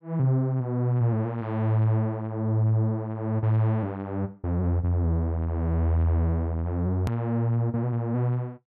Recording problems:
hard cut with a click; at 7 s

